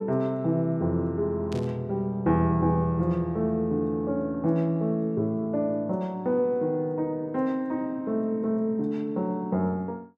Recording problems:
burst of static; at 1.5 s; peak -11 dB vs average level

